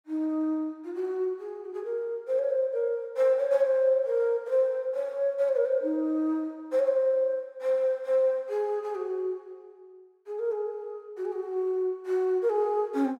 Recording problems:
none

